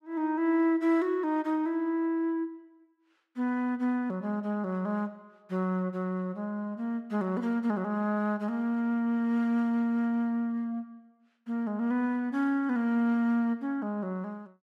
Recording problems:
none

